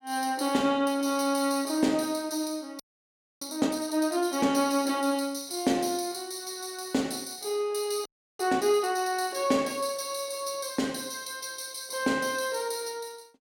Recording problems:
audio freezing; at 3 s for 0.5 s and at 8 s

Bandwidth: 16.5 kHz